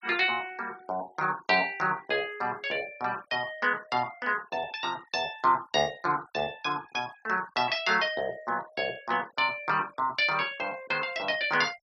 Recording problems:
denoising artefacts; signal-to-artefact ratio 23 dB

